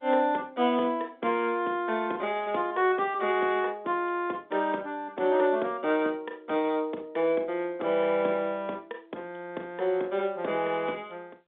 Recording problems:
telephone audio; 220 Hz to 3.6 kHz, G.711

